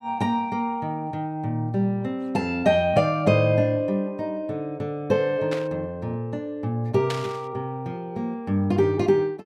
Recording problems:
static burst; at 5.5 s and at 7 s; peak -2 dB vs average level

